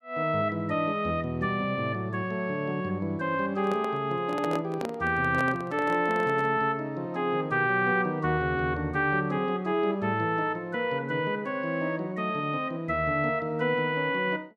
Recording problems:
handling noise; from 3.5 to 6.5 s; peak -2 dB vs average level

